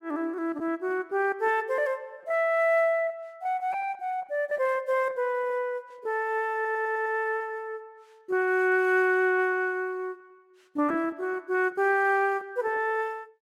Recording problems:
packet loss; 9% of the sound replaced, filled with repeated pitch periods
audio stuttering; at 6.5 s

